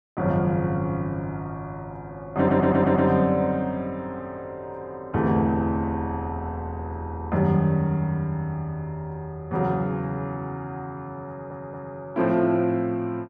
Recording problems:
stutter; at 2.5 s and at 11 s

